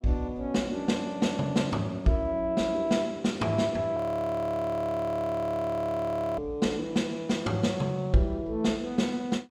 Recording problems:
frozen audio; at 4 s for 2.5 s

